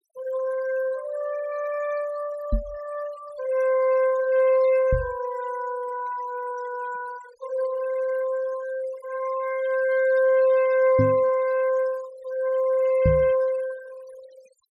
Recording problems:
noise reduction artefacts; signal-to-artefact ratio 20 dB
knock on the microphone; 4 times, first at 2.5 s; peak +4 dB vs average level

